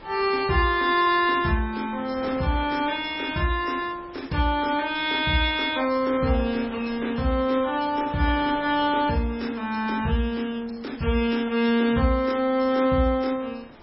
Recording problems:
lossy codec; MP3, log-spectral distance 3 dB, nothing above 5.2 kHz
wind noise; below 1.6 kHz, SNR 20 dB

